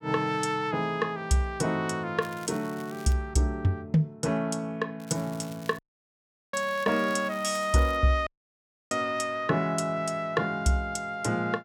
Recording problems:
crackling; at 2 s and from 5 to 8 s; loose cable, SNR 21 dB
dropout; at 6 s for 0.5 s and at 8.5 s for 0.5 s

